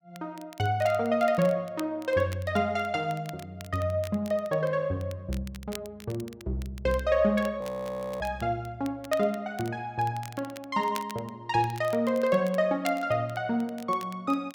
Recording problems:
crackling; vinyl, SNR 20 dB
audio freezing; at 7.5 s for 0.5 s

